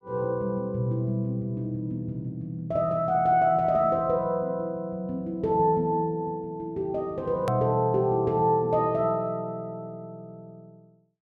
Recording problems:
click at an edit; at 7.5 s

